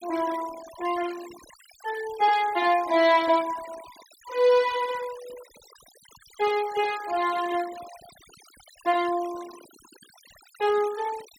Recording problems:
noise reduction artefacts; signal-to-artefact ratio 19 dB

